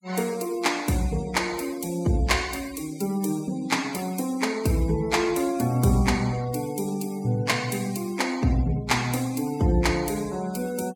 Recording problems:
denoising artefacts; signal-to-artefact ratio 18 dB

